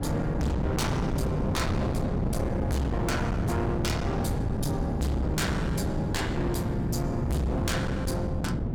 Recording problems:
distortion; hard clipping, signal-to-distortion ratio 6 dB
wind noise; below 290 Hz, SNR -1 dB

